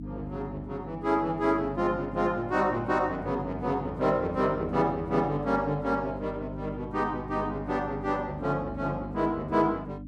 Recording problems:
hum; 50 Hz, harmonics up to 300 Hz, SNR 10 dB

